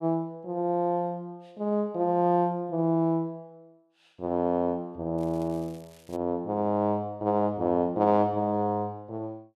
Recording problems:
crackle; at 5 s; loose cable, SNR 28 dB

